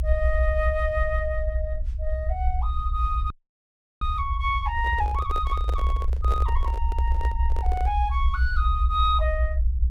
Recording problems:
low-frequency rumble; below 66 Hz, SNR -2 dB
frozen audio; at 3.5 s for 0.5 s
handling noise; from 5 to 8 s; peak -3 dB vs average level

